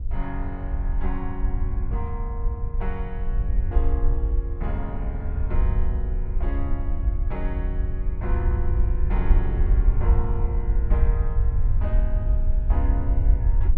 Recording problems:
wind noise; below 64 Hz, SNR -10 dB

